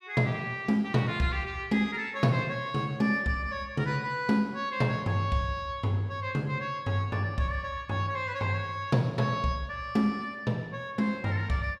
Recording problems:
none

